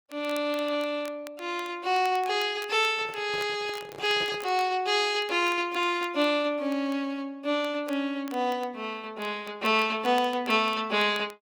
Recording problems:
codec artefacts; Opus, log-spectral distance 2 dB, nothing above 19 kHz
crackling; vinyl, SNR 22 dB
microphone handling noise; from 3 to 4.5 s; peak -9 dB vs average level

